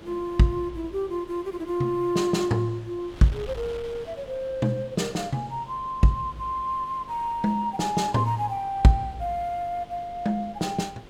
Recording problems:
electrical hum; 50 Hz, harmonics up to 600 Hz, SNR 26 dB
wind noise; below 1.9 kHz, SNR 21 dB

